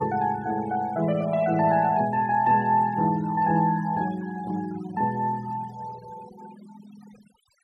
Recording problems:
denoising artefacts; signal-to-artefact ratio 20 dB

